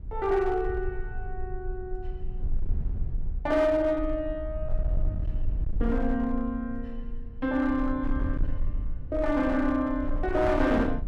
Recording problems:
distortion; hard clipping, signal-to-distortion ratio 11 dB
rumble; below 60 Hz, strongest tone 20 Hz, SNR 7 dB

